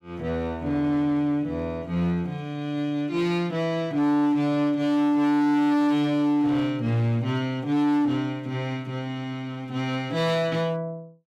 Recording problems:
distorted audio; hard clipping, signal-to-distortion ratio 8 dB

